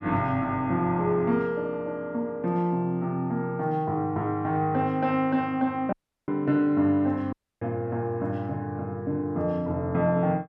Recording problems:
dropout; at 6 s and at 7.5 s

